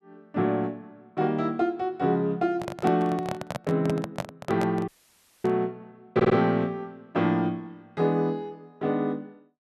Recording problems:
handling noise; from 2.5 to 5.5 s; peak +1 dB vs average level
audio cutting out; at 5 s for 0.5 s
stutter; at 6 s

